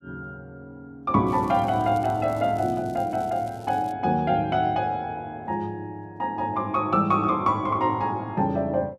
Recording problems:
crackling; from 1.5 to 4 s; loose cable, SNR 27 dB

